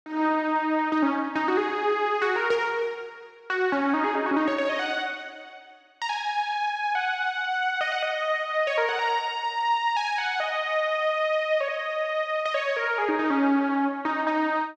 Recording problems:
none

